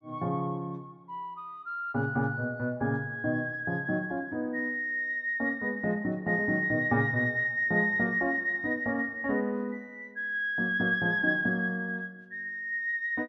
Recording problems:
none

